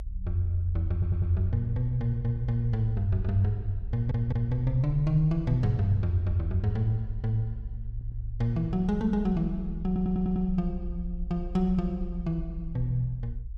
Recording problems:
rumble; below 60 Hz, SNR 10 dB
stutter; 4 times, first at 1 s

